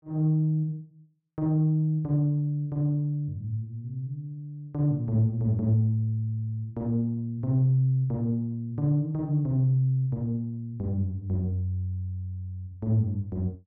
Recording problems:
none

